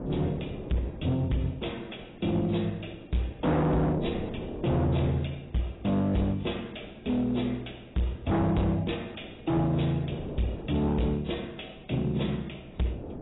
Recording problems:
lossy compression; AAC, log-spectral distance 6 dB, nothing above 3.8 kHz
distortion; hard clipping, uneven, signal-to-distortion ratio 7 dB
wind noise; below 480 Hz, SNR 14 dB

